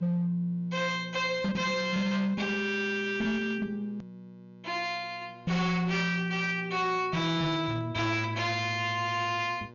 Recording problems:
low-pass filter; nothing above 7 kHz
distortion; hard clipping, signal-to-distortion ratio 12 dB
hum; 60 Hz, harmonics up to 1.6 kHz, SNR 23 dB
hard cut with a click; at 4 s

